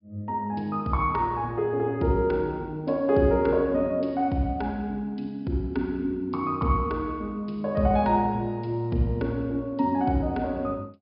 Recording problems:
treble cut off; nothing above 5.5 kHz

